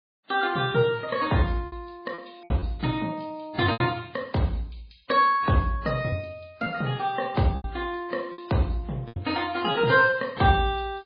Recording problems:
lossy codec; MP3, then AAC, log-spectral distance 5 dB, nothing above 4.1 kHz
packet loss; 6% of the sound replaced, filled with repeated pitch periods

